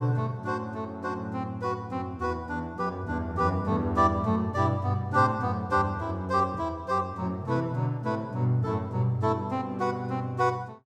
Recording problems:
none

